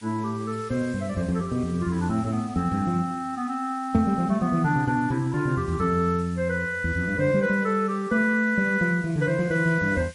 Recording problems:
lossy codec; MP3, log-spectral distance 2 dB, nothing above 8.5 kHz
hiss; SNR 25 dB
microphone thump; at 4 s; peak 0 dB vs average level

